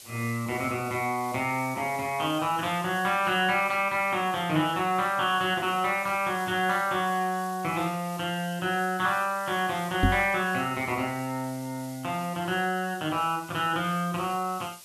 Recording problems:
hiss; SNR 18 dB
microphone bump; at 10 s; peak +7 dB vs average level

